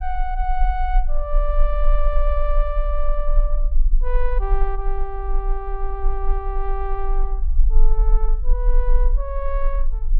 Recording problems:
low-frequency rumble; below 36 Hz, strongest tone 22 Hz, SNR -5 dB

